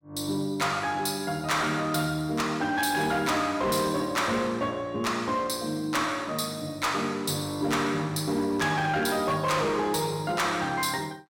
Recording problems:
distortion; hard clipping, signal-to-distortion ratio 11 dB

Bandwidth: 17 kHz